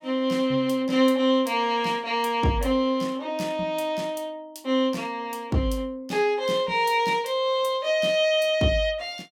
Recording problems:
none

